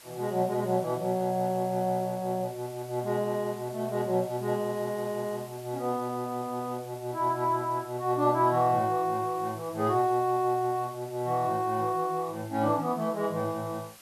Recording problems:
hiss; slope 0 dB per octave, SNR 21 dB

